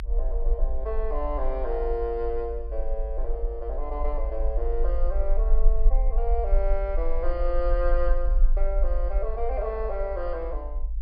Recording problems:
treble cut off; nothing above 5.5 kHz
rumble; below 44 Hz, strongest tone 20 Hz, SNR -2 dB

